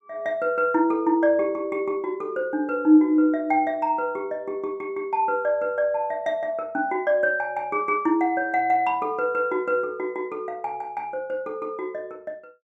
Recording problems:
none

